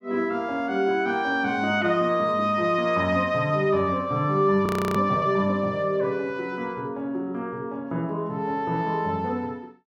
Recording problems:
frozen audio; at 4.5 s

